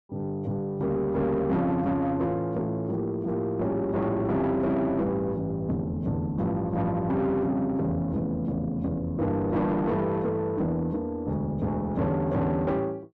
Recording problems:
distortion; soft clipping, signal-to-distortion ratio 10 dB

